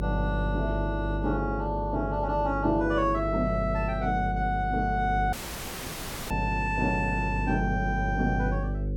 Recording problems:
mains hum; 50 Hz, harmonics up to 550 Hz, SNR 4 dB
audio cutting out; at 5.5 s for 1 s

